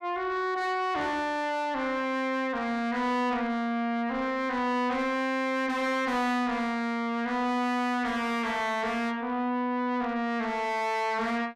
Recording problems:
distorted audio; soft clipping, signal-to-distortion ratio 7 dB

